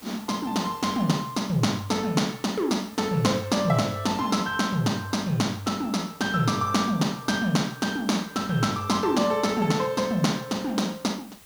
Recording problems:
hiss; slope -2 dB per octave, SNR 23 dB

